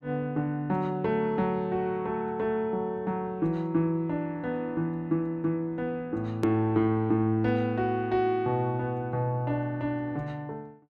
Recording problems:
click at an edit; at 6.5 s

